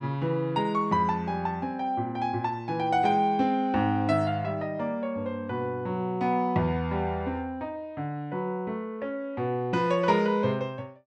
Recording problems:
none

